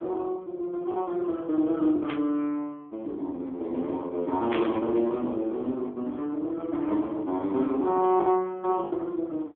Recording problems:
phone line; 220 Hz to 3.6 kHz, AMR-NB
lost packets; 4% of the sound replaced, filled with the last packet
burst of static; at 2 s and at 4.5 s; peak -2 dB vs average level

